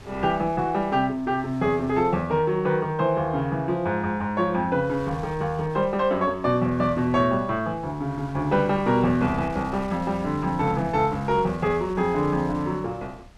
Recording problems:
wind on the microphone; below 560 Hz, SNR 21 dB

